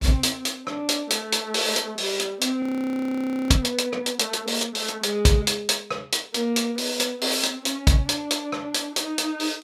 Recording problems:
frozen audio; at 2.5 s for 1 s

